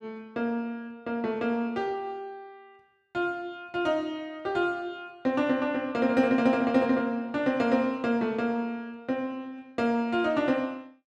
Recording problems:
none

